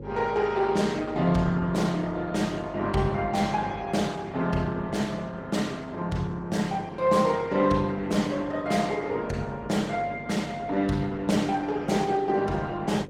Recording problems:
lossy compression; Opus, log-spectral distance 3 dB, nothing above 19 kHz
electrical hum; 50 Hz, harmonics up to 550 Hz, SNR 16 dB

